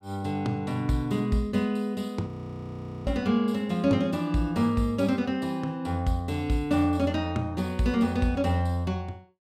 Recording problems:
frozen audio; at 2.5 s for 1 s

